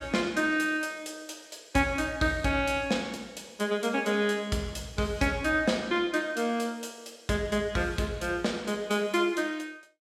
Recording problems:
none

